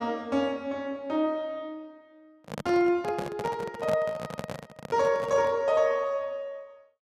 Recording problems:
microphone handling noise; from 2.5 to 5.5 s; peak -2 dB vs average level

